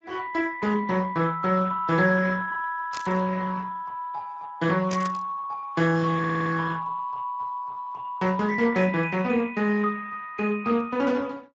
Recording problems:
lossy codec; Speex, log-spectral distance 3 dB
static burst; at 3 s and at 5 s; peak -5 dB vs average level
audio stuttering; at 6 s

